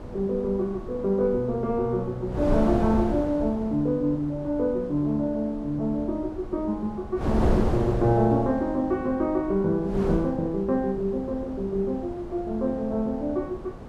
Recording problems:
wind on the microphone; below 420 Hz, SNR 8 dB

